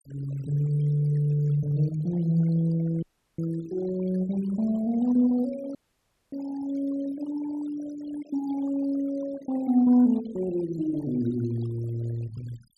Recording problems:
noise reduction artefacts; signal-to-artefact ratio 21 dB
audio cutting out; at 3 s and at 6 s for 0.5 s

